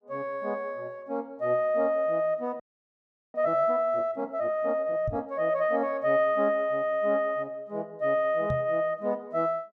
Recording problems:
frozen audio; at 2.5 s for 0.5 s
knock on the microphone; at 5 s and at 8.5 s; peak -2 dB vs average level

